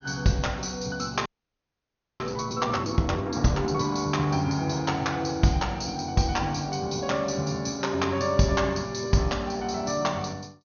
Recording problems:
low-pass filter; nothing above 6.6 kHz
audio freezing; at 1.5 s for 1 s

